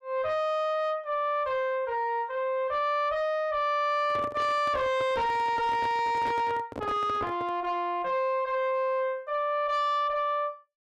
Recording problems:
distorted audio; soft clipping, signal-to-distortion ratio 8 dB
handling noise; from 4 to 7.5 s; peak -4 dB vs average level

